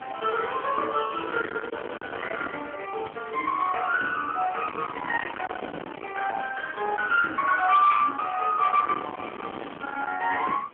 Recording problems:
telephone audio; 280 Hz to 3.4 kHz, AMR-NB
distortion; soft clipping, signal-to-distortion ratio 7 dB
wind noise; below 1.8 kHz, SNR 11 dB

